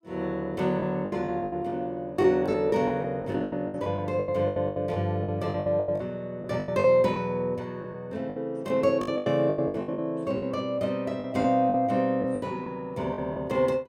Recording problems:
packet loss; 15% of the sound replaced, filled with the last packet

